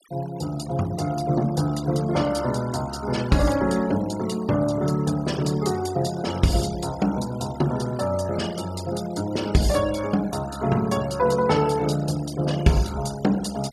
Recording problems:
noise reduction artefacts; signal-to-artefact ratio 17 dB

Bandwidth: 15.5 kHz